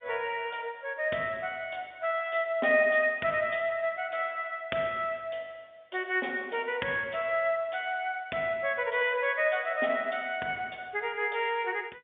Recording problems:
telephone audio; 280 Hz to 3.6 kHz, G.711

